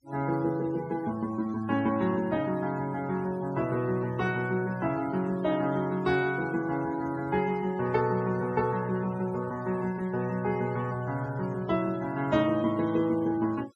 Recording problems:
noise reduction artefacts; signal-to-artefact ratio 19 dB

